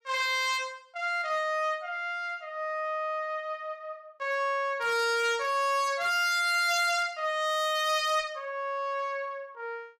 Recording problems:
distortion; hard clipping, uneven, signal-to-distortion ratio 11 dB

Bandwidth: 15.5 kHz